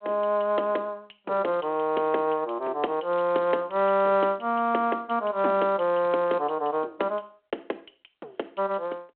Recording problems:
telephone audio; 260 Hz to 3.5 kHz, G.726

